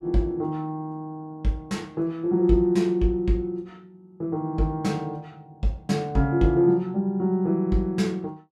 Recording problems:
none

